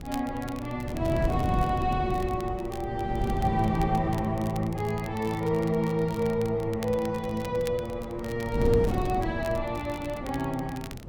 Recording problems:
wind noise; below 230 Hz, SNR 6 dB
crackle; vinyl, SNR 19 dB

